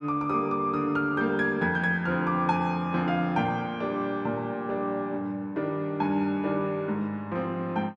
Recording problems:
none

